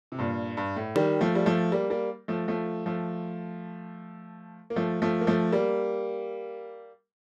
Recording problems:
hard cut with a click; at 1 s

